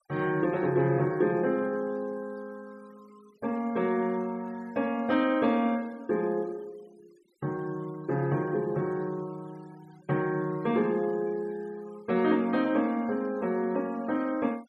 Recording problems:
denoising artefacts; signal-to-artefact ratio 27 dB

